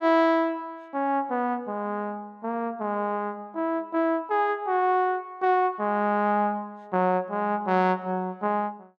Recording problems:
none

